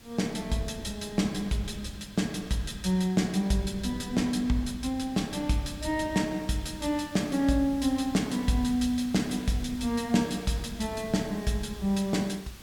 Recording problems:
hiss; slope 0 dB per octave, SNR 21 dB
wind noise; below 270 Hz, SNR 20 dB

